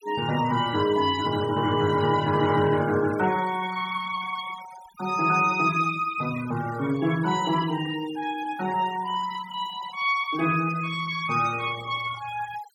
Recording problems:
denoising artefacts; signal-to-artefact ratio 16 dB

